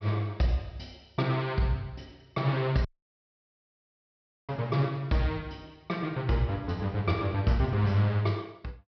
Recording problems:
treble missing; nothing above 5.5 kHz
dropout; at 3 s for 1.5 s

